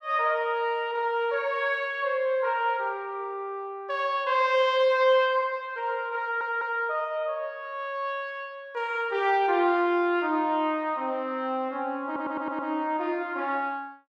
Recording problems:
audio stuttering; at 6 s and at 12 s

